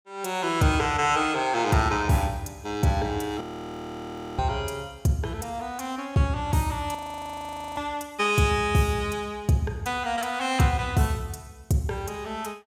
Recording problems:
frozen audio; at 3.5 s for 1 s and at 7 s for 1 s

